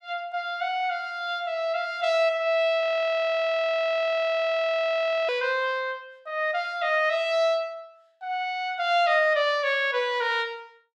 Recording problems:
audio freezing; at 3 s for 2.5 s

